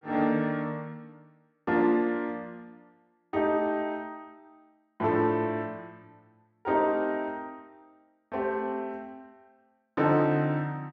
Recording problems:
none

